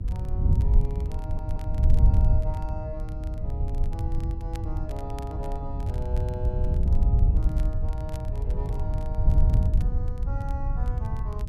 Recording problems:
hum; 60 Hz, harmonics up to 420 Hz, SNR 6 dB
wind noise; below 84 Hz, SNR -13 dB
crackling; vinyl, SNR 16 dB
audio stuttering; at 1 s

